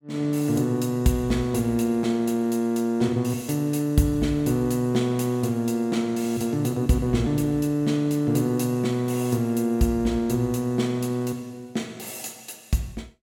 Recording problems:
none

